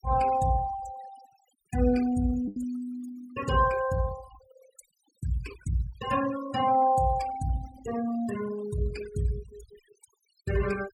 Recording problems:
noise reduction artefacts; signal-to-artefact ratio 16 dB
packet loss; 0.9% of the sound replaced, filled with the last packet

